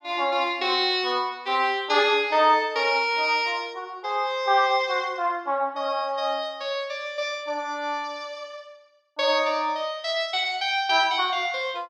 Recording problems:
none

